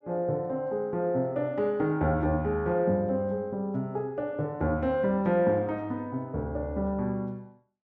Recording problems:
none

